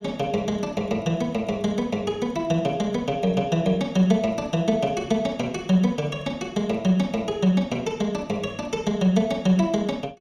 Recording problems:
none

